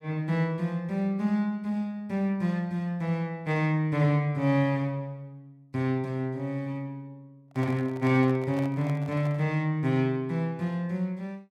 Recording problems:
microphone handling noise; from 7.5 to 9.5 s; peak -10 dB vs average level

